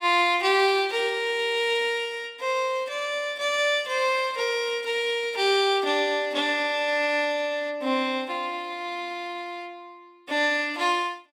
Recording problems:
none

